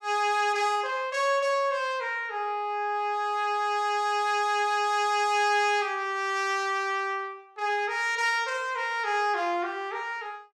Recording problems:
none

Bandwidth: 15 kHz